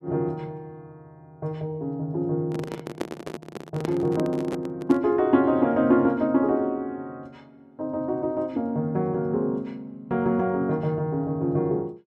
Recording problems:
handling noise; from 2.5 to 5 s; peak 0 dB vs average level

